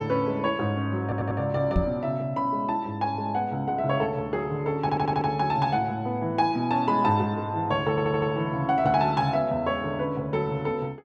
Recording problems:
stutter; at 1 s, at 5 s and at 8 s
knock on the microphone; at 2 s; peak +4 dB vs average level

